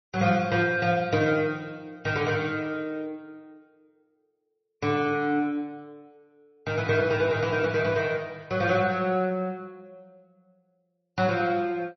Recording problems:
lossy codec; MP3, log-spectral distance 2 dB, nothing above 5.7 kHz

